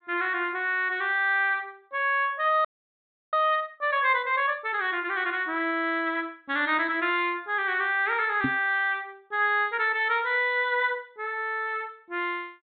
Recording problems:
treble missing; nothing above 4 kHz
frozen audio; at 2.5 s for 0.5 s
microphone bump; at 8.5 s; peak +2 dB vs average level

